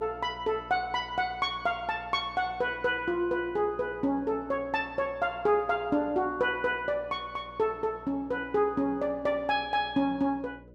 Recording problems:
hum; 60 Hz, harmonics up to 600 Hz, SNR 22 dB

